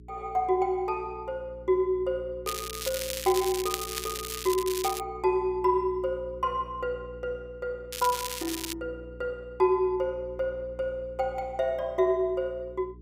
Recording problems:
hum; 60 Hz, harmonics up to 420 Hz, SNR 18 dB
crackling; from 2.5 to 5 s and at 8 s; loose cable, SNR 5 dB

